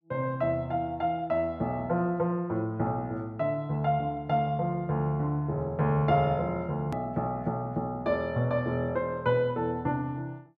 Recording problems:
click at an edit; at 7 s

